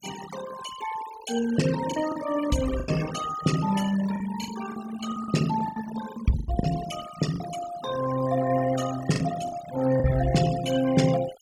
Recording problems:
denoising artefacts; signal-to-artefact ratio 11 dB
packet loss; 7% of the sound replaced, filled with the last packet

